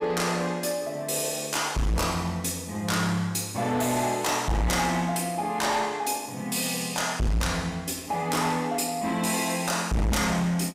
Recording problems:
distorted audio; hard clipping, signal-to-distortion ratio 7 dB

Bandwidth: 15.5 kHz